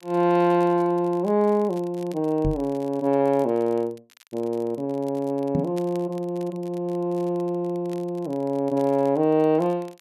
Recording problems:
crackling; vinyl, SNR 29 dB
microphone bump; at 2.5 s and at 5.5 s; peak +2 dB vs average level

